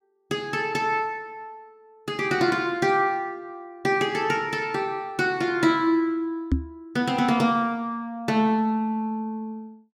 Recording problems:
microphone bump; at 6.5 s; peak +6 dB vs average level

